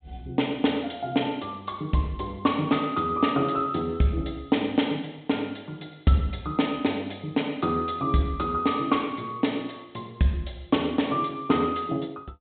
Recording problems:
low-pass filter; nothing above 4 kHz

